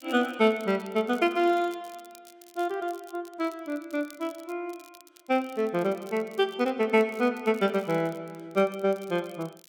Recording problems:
crackle; vinyl, SNR 26 dB

